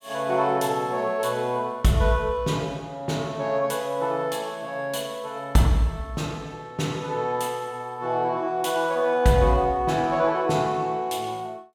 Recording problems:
none

